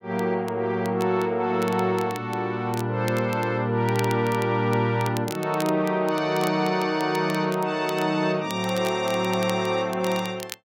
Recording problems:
crackling; vinyl, SNR 18 dB

